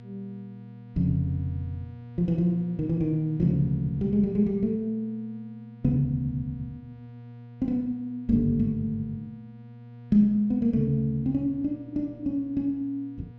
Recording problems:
hum; 60 Hz, harmonics up to 960 Hz, SNR 19 dB

